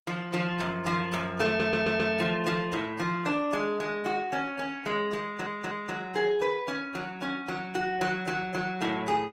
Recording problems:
lossy compression; Opus, then AAC, log-spectral distance 3 dB, nothing above 15.5 kHz
stutter; at 1.5 s and at 5 s

